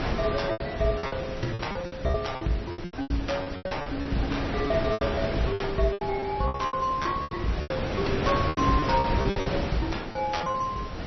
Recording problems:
codec artefacts; MP3, log-spectral distance 6 dB, nothing above 5.8 kHz
background hiss; SNR 27 dB
wind on the microphone; below 870 Hz, SNR 3 dB
packet loss; 18% of the sound replaced, filled with repeated pitch periods

